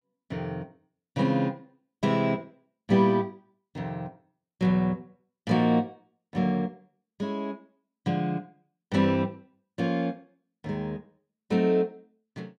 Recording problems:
none

